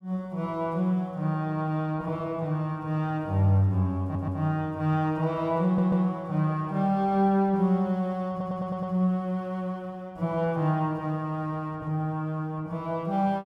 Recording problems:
stutter; at 4 s, at 5.5 s and at 8.5 s

